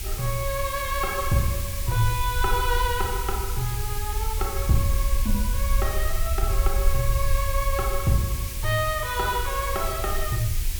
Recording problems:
electrical hum; 60 Hz, harmonics up to 1.4 kHz, SNR 24 dB
hiss; SNR 6 dB
low-frequency rumble; below 62 Hz, SNR 2 dB

